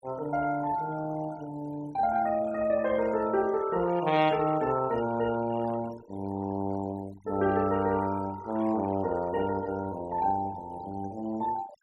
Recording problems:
denoising artefacts; signal-to-artefact ratio 18 dB

